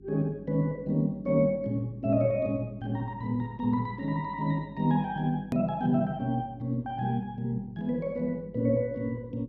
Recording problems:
electrical hum; 50 Hz, harmonics up to 400 Hz, SNR 23 dB
hard cut with a click; at 5.5 s

